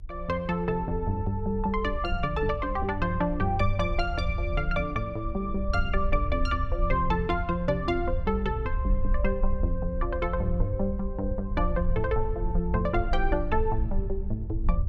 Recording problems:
rumble; below 60 Hz, SNR 4 dB

